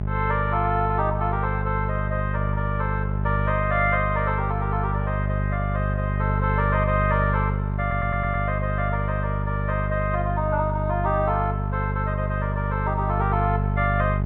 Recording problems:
low-pass filter; nothing above 4 kHz
hum; 50 Hz, harmonics up to 850 Hz, SNR 0 dB
stutter; at 8 s

